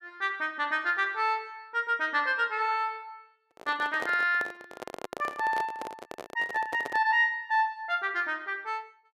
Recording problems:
handling noise; from 3.5 to 7 s; peak -4 dB vs average level

